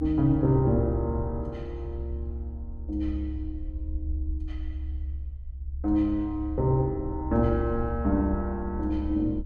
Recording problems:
low-frequency rumble; below 70 Hz, strongest tone 70 Hz, SNR 7 dB

